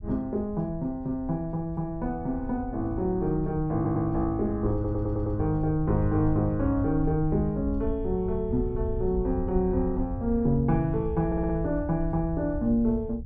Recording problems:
low-frequency rumble; below 84 Hz, SNR 9 dB
stutter; at 4 s, at 4.5 s and at 11 s

